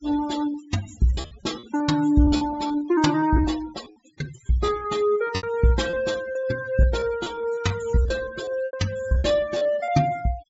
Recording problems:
low-pass filter; nothing above 8 kHz
denoising artefacts; signal-to-artefact ratio 15 dB
lost packets; 12% of the sound replaced, filled with repeated pitch periods

